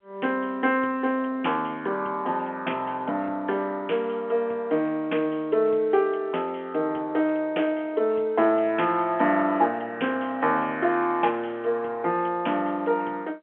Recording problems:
telephone audio; 260 Hz to 3.3 kHz, G.711

